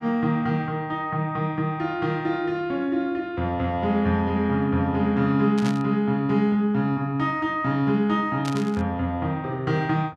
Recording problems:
static burst; at 5.5 s and at 8.5 s; peak -7 dB vs average level

